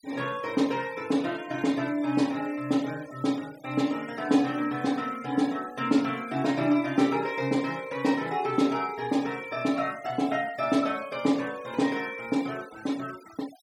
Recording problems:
noise reduction artefacts; signal-to-artefact ratio 21 dB

